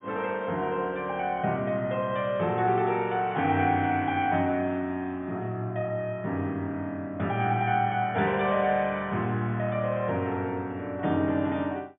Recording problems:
treble missing; nothing above 3.6 kHz

